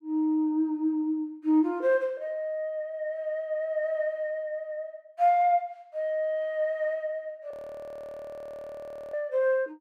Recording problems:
frozen audio; at 7.5 s for 1.5 s

